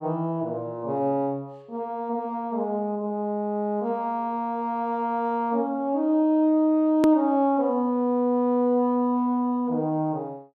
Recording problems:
click at an edit; at 7 s

